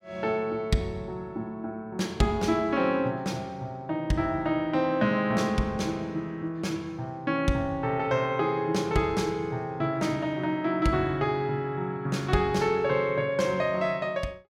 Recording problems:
none

